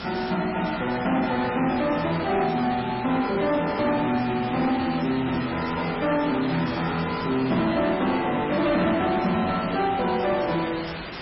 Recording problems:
lossy codec; MP3, log-spectral distance 15 dB, nothing above 4.5 kHz
distorted audio; soft clipping, signal-to-distortion ratio 11 dB
hiss; SNR 10 dB

